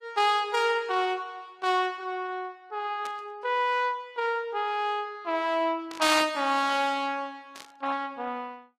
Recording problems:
lossy compression; AAC, log-spectral distance 2 dB, nothing above 15.5 kHz
burst of static; at 3 s, at 6 s and at 7.5 s; peak -11 dB vs average level

